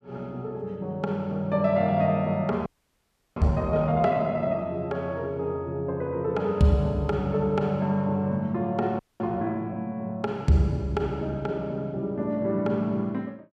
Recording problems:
audio freezing; at 2.5 s for 0.5 s and at 9 s

